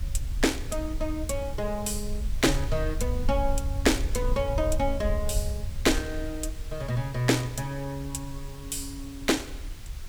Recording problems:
hiss; slope -1 dB per octave, SNR 19 dB
rumble; below 68 Hz, SNR 5 dB

